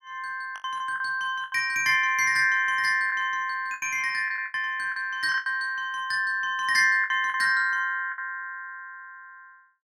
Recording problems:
lost packets; 8% of the sound replaced, filled with the last packet

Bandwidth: 16 kHz